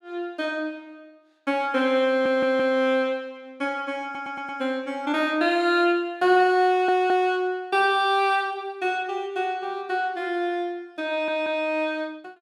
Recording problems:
stutter; 4 times, first at 2 s

